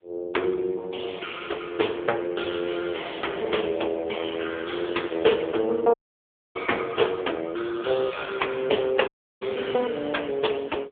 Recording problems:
telephone audio; 300 Hz to 3.5 kHz, AMR-NB
audio cutting out; at 6 s for 0.5 s and at 9 s

